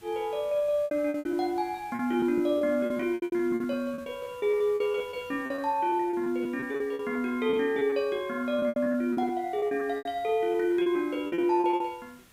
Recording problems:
background hiss; slope -1 dB per octave, SNR 26 dB
lost packets; 18% of the sound replaced, filled with repeated pitch periods

